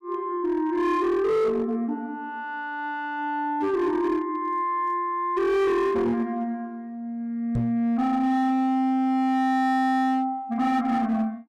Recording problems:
distorted audio; hard clipping, uneven, signal-to-distortion ratio 10 dB
knock on the microphone; at 7.5 s; peak +1 dB vs average level

